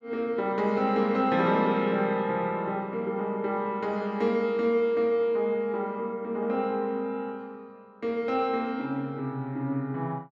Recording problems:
none

